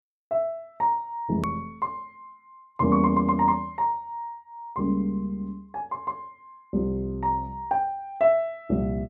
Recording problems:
click at an edit; at 1.5 s

